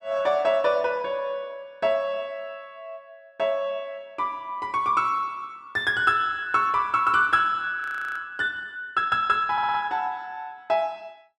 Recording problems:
frozen audio; at 8 s
audio stuttering; at 9.5 s

